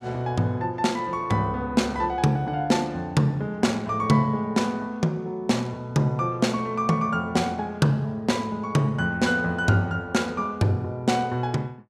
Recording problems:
none

